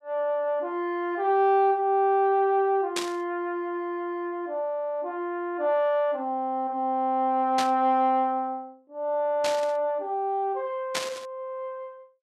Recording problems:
static burst; 4 times, first at 3 s; peak +1 dB vs average level

